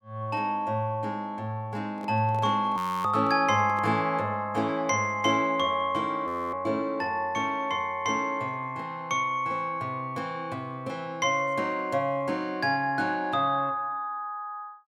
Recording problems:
handling noise; from 2 to 4 s; peak -10 dB vs average level
audio freezing; at 3 s and at 6.5 s

